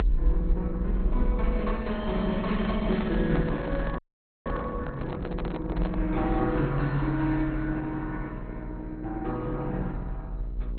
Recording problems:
lossy codec; Opus, then MP2, log-spectral distance 2 dB, nothing above 4.2 kHz
hum; 60 Hz, harmonics up to 660 Hz, SNR 12 dB
rumble; below 48 Hz, strongest tone 44 Hz, SNR 5 dB
microphone handling noise; from 2.5 to 6 s; peak -2 dB vs average level
audio freezing; at 4 s

